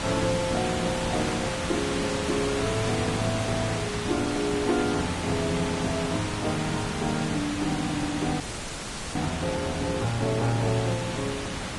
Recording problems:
codec artefacts; Vorbis, log-spectral distance 8 dB
background hiss; slope -3 dB per octave, SNR 3 dB
frozen audio; at 8.5 s for 1 s

